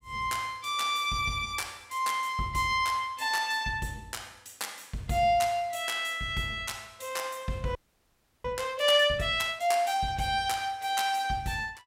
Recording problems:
audio freezing; at 8 s for 0.5 s

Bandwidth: 16 kHz